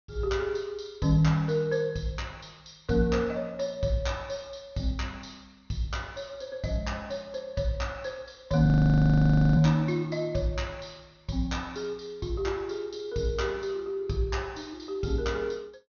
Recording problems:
low-pass filter; nothing above 6.5 kHz
audio freezing; at 8.5 s for 1 s

